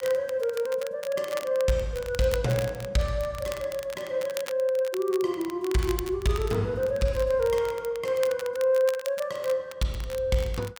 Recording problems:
crackle; vinyl, SNR 15 dB

